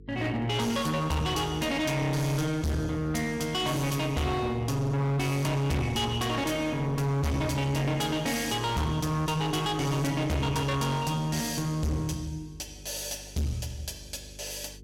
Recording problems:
distorted audio; hard clipping, uneven, signal-to-distortion ratio 5 dB
hum; 50 Hz, harmonics up to 450 Hz, SNR 21 dB

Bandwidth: 16 kHz